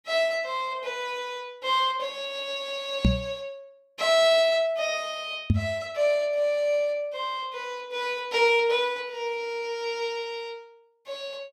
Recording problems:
microphone thump; at 3 s and at 5.5 s; peak +8 dB vs average level

